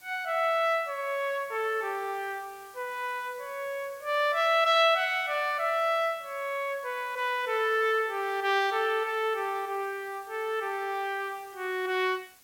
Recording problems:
hiss; slope 0 dB per octave, SNR 24 dB

